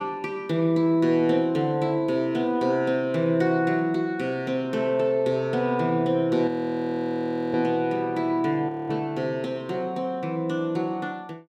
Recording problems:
frozen audio; at 6.5 s for 1 s and at 8.5 s

